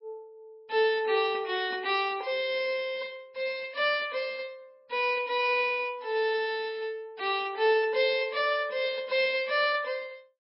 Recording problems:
lossy compression; MP3, log-spectral distance 3 dB, nothing above 4.8 kHz

